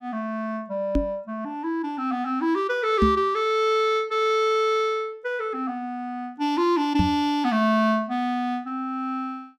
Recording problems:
microphone bump; at 1 s, at 3 s and at 7 s; peak +6 dB vs average level

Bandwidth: 15.5 kHz